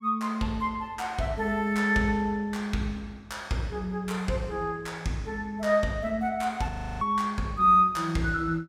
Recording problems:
audio freezing; at 6.5 s

